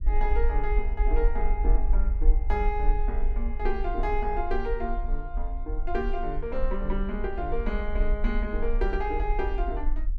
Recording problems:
low-frequency rumble; below 42 Hz, strongest tone 22 Hz, SNR -2 dB

